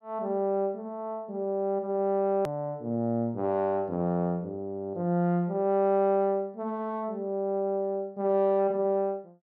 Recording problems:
click at an edit; at 2.5 s

